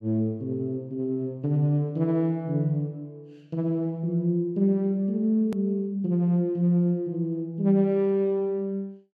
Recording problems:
edit click; at 5.5 s

